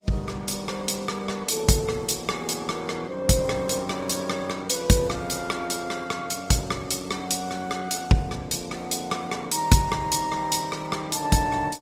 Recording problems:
lossy compression; Opus, log-spectral distance 5 dB, nothing above 18.9 kHz

